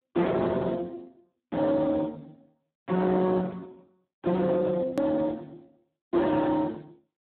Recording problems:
telephone audio; 240 Hz to 2.1 kHz, Speex
distortion; soft clipping, signal-to-distortion ratio 8 dB
click at an edit; at 5 s

